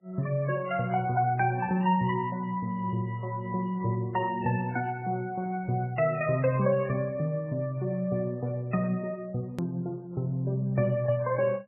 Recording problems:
lossy codec; AAC, then MP3, log-spectral distance 2 dB, nothing above 2.4 kHz
click at an edit; at 9.5 s

